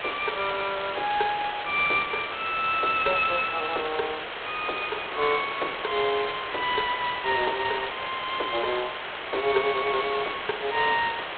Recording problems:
phone line; 300 Hz to 3.5 kHz, G.726
background hiss; SNR 6 dB
wind on the microphone; below 1.2 kHz, SNR 23 dB

